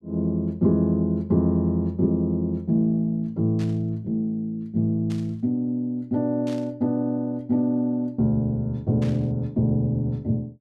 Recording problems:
burst of static; 4 times, first at 3.5 s; peak -14 dB vs average level

